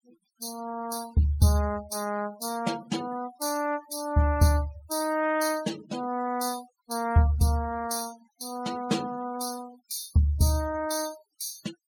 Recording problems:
denoising artefacts; signal-to-artefact ratio 17 dB

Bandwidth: 17.5 kHz